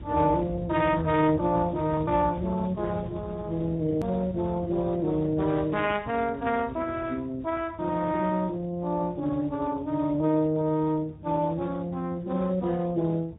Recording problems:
treble missing; nothing above 3.6 kHz
lossy codec; Speex, log-spectral distance 3 dB
rumble; below 170 Hz, SNR 14 dB
click at an edit; at 4 s

